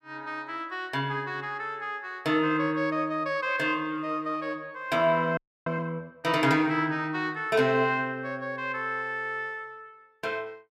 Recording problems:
frozen audio; at 5.5 s

